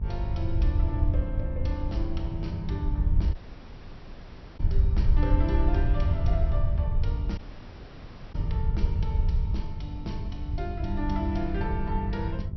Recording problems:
treble missing; nothing above 5.8 kHz
hum; 50 Hz, harmonics up to 450 Hz, SNR 4 dB
low-frequency rumble; below 80 Hz, SNR -6 dB
wind on the microphone; below 280 Hz, SNR 18 dB
dropout; at 3.5 s for 1.5 s and at 7.5 s for 1 s

